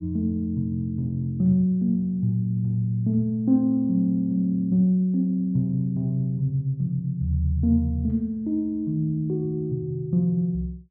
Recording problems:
none

